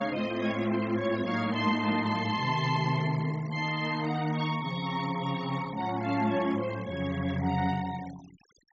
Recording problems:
treble missing; nothing above 8 kHz
denoising artefacts; signal-to-artefact ratio 18 dB

